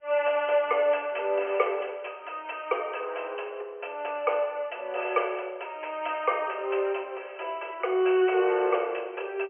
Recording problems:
phone line; 320 Hz to 3.1 kHz, G.711

